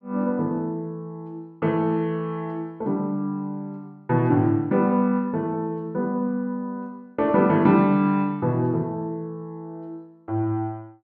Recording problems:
none

